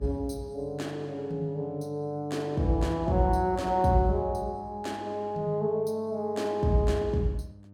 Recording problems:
hum; 50 Hz, harmonics up to 700 Hz, SNR 21 dB

